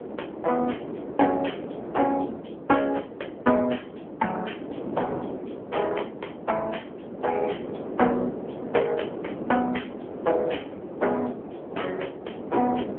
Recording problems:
phone line; 300 Hz to 3.2 kHz, AMR-NB
wind noise; below 540 Hz, SNR 8 dB

